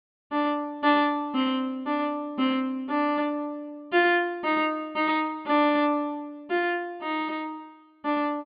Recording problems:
treble cut off; nothing above 4.8 kHz

